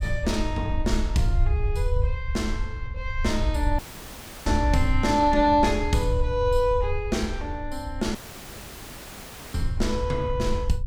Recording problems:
rumble; below 76 Hz, SNR 4 dB
audio cutting out; at 4 s for 0.5 s and at 8 s for 1.5 s

